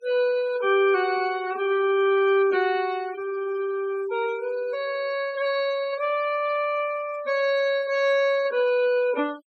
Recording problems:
denoising artefacts; signal-to-artefact ratio 20 dB

